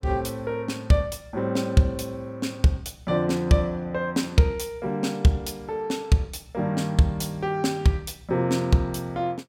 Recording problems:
none

